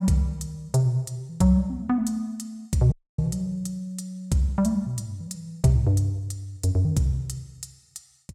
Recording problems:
audio cutting out; at 3 s

